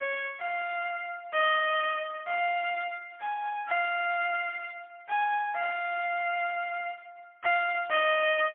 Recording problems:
telephone audio; 430 Hz to 3.2 kHz, AMR-NB, then MP3

